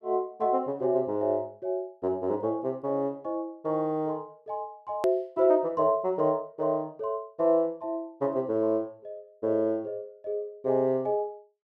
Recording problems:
click at an edit; at 5 s

